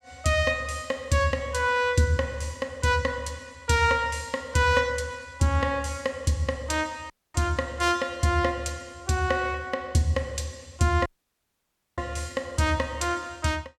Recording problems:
audio cutting out; at 7 s and at 11 s for 1 s

